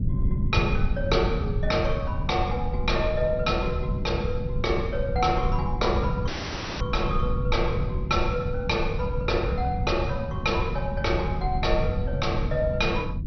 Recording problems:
lossy compression; MP2, log-spectral distance 2 dB, nothing above 5.8 kHz
rumble; below 140 Hz, SNR 2 dB
audio cutting out; at 6.5 s for 0.5 s

